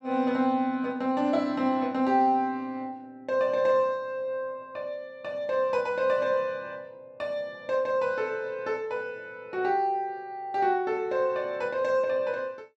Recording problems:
none

